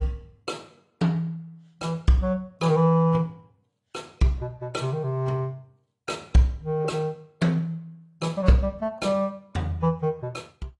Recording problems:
codec artefacts; AAC, then AAC, log-spectral distance 2 dB, nothing above 10.7 kHz

